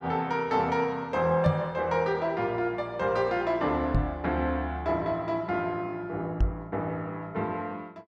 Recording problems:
knock on the microphone; at 1.5 s, at 4 s and at 6.5 s; peak +6 dB vs average level

